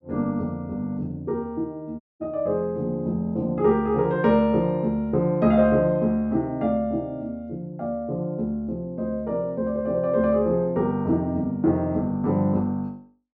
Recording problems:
treble cut off; nothing above 8 kHz
audio cutting out; at 2 s

